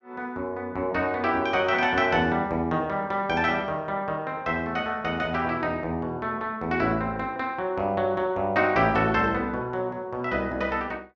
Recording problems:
none

